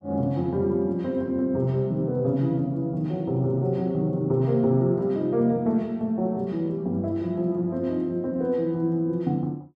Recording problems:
none

